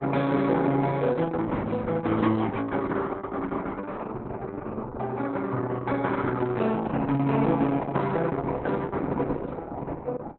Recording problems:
codec artefacts; Opus, log-spectral distance 4 dB, nothing above 3.9 kHz

